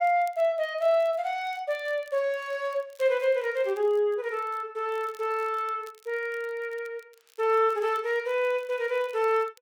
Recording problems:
crackle; vinyl, SNR 30 dB

